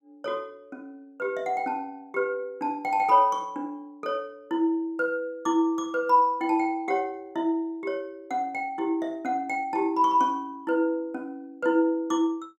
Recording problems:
none

